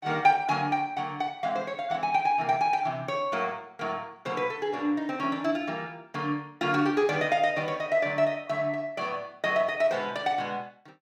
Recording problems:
none

